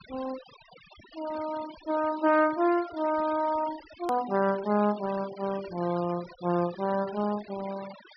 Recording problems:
treble cut off; nothing above 5.5 kHz
noise reduction artefacts; signal-to-artefact ratio 17 dB
hard cut with a click; at 4 s

